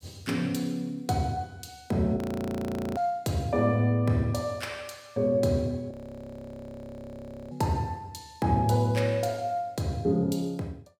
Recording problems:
audio freezing; at 2 s for 1 s and at 6 s for 1.5 s

